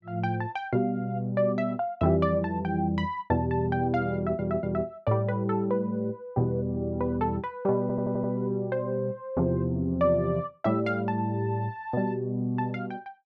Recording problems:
stutter; at 4 s and at 8 s

